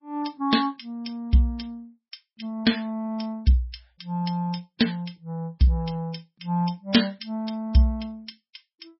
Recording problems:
lossy compression; MP3, log-spectral distance 4 dB, nothing above 5.5 kHz

